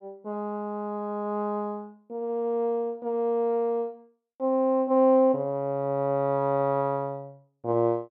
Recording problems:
none

